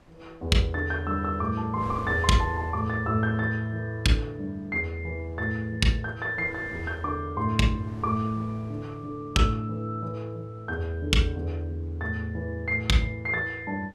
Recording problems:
wind noise; below 810 Hz, SNR 23 dB

